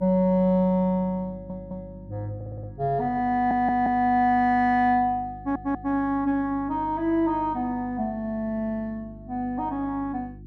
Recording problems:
hum; 50 Hz, harmonics up to 350 Hz, SNR 19 dB
audio stuttering; 4 times, first at 1.5 s

